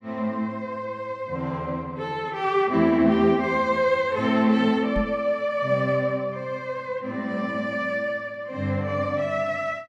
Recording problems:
microphone thump; at 5 s; peak +1 dB vs average level

